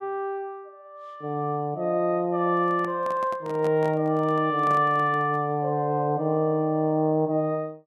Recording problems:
microphone handling noise; from 2.5 to 5.5 s; peak -9 dB vs average level

